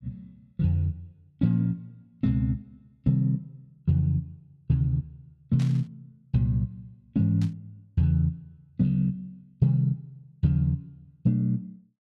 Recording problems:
burst of static; at 5.5 s and at 7.5 s; peak -13 dB vs average level

